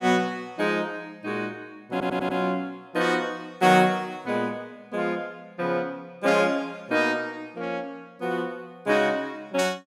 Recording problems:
audio stuttering; at 2 s

